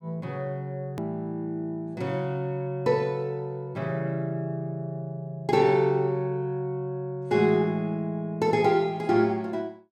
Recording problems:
edit click; at 1 s

